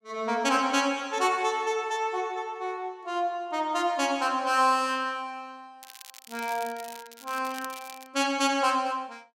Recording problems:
crackling; from 6 to 8 s; loose cable, SNR 17 dB

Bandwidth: 16 kHz